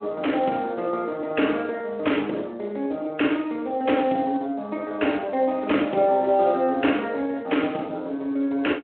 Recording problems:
phone line; 220 Hz to 3.3 kHz, Speex

